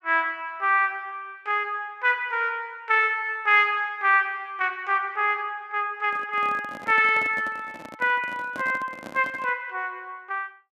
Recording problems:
handling noise; from 6 to 9.5 s; peak -10 dB vs average level

